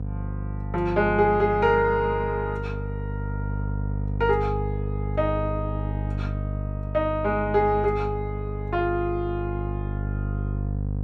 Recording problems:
hum; 50 Hz, harmonics up to 500 Hz, SNR 5 dB

